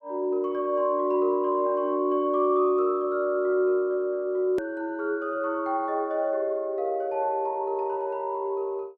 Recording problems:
click at an edit; at 4.5 s

